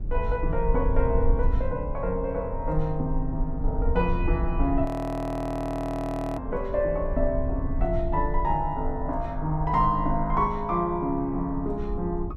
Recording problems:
rumble; below 60 Hz, SNR 4 dB
audio freezing; at 5 s for 1.5 s

